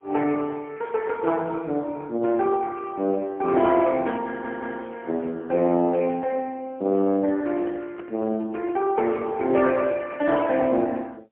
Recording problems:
telephone audio; 220 Hz to 3.3 kHz, AMR-NB, then MP3
stutter; at 4.5 s
microphone handling noise; from 7.5 to 10 s; peak -10 dB vs average level

